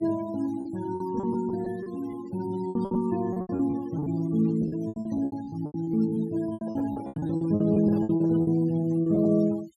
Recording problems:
denoising artefacts; signal-to-artefact ratio 21 dB
lost packets; 17% of the sound replaced, filled with repeated pitch periods
handling noise; from 6.5 to 8.5 s; peak -8 dB vs average level

